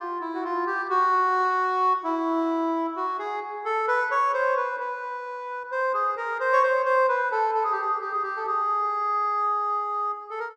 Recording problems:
none

